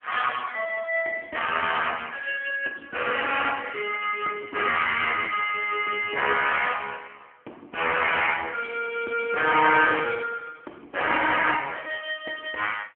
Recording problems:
phone line; 280 Hz to 2.9 kHz, AMR-NB

